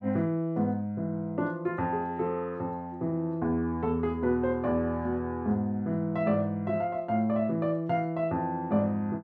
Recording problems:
none

